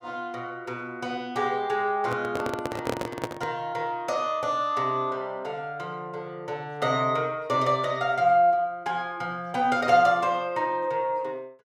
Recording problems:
microphone handling noise; from 2 to 3.5 s; peak +2 dB vs average level

